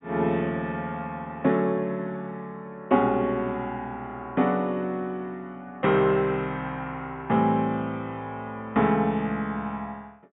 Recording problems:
low-pass filter; nothing above 3.7 kHz

